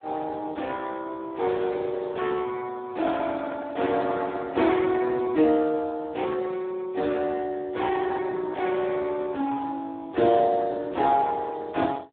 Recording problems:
phone line; 260 Hz to 2.2 kHz, Speex

